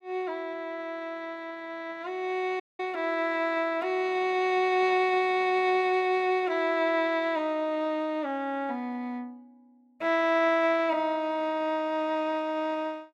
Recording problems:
audio cutting out; at 2.5 s

